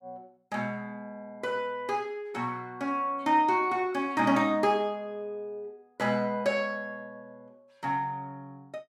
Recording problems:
none

